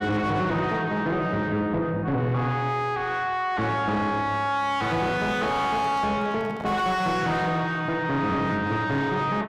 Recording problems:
distortion; soft clipping, signal-to-distortion ratio 6 dB
microphone handling noise; from 5.5 to 7 s; peak -6 dB vs average level

